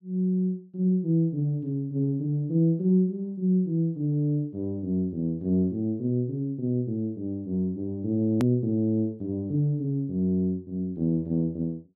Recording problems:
hard cut with a click; at 8.5 s

